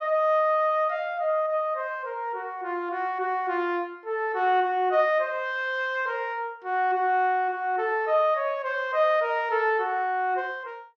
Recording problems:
none

